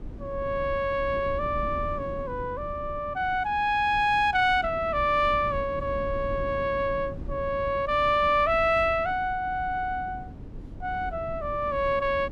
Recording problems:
rumble; below 220 Hz, SNR 14 dB

